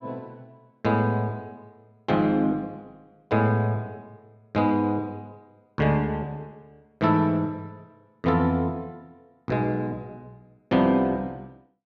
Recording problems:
none

